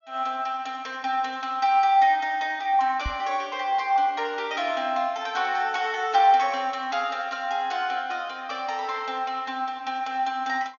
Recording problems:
treble cut off; nothing above 6.8 kHz
knock on the microphone; at 3 s; peak -4 dB vs average level

